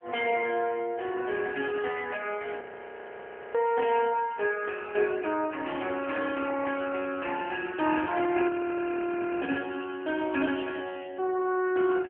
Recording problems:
telephone audio; 240 Hz to 2.6 kHz, AMR-NB
audio freezing; at 2.5 s for 1 s and at 8.5 s for 1 s

